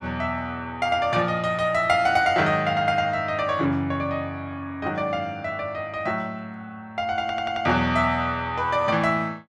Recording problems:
audio stuttering; at 7 s

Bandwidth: 14 kHz